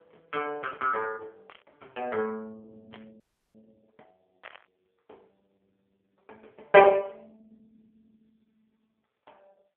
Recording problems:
phone line; 320 Hz to 3.2 kHz, AMR-NB
burst of static; at 1.5 s, at 3 s and at 4.5 s; peak -14 dB vs average level
audio freezing; at 3 s

